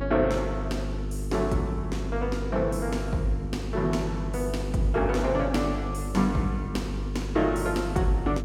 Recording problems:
hum; 50 Hz, harmonics up to 450 Hz, SNR 5 dB

